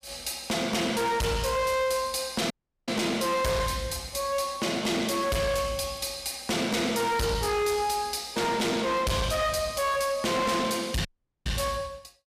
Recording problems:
distorted audio; hard clipping, signal-to-distortion ratio 6 dB
dropout; at 2.5 s and at 11 s

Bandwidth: 15 kHz